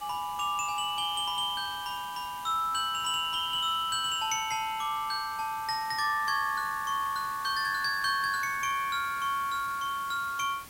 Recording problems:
background hiss; slope -1 dB per octave, SNR 17 dB

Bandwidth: 16 kHz